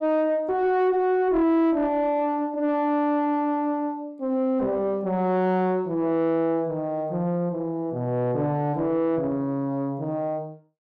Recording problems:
distortion; soft clipping, signal-to-distortion ratio 10 dB

